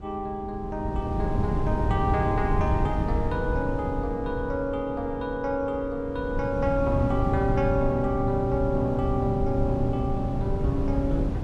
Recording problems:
wind on the microphone; below 170 Hz, SNR 2 dB

